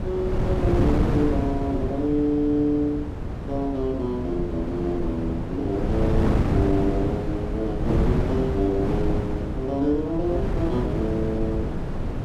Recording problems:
wind noise; below 290 Hz, SNR 1 dB

